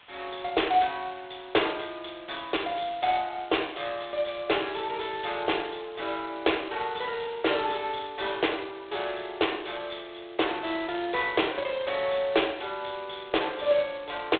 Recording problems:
phone line; 300 Hz to 3.6 kHz, G.726
background hiss; SNR 25 dB

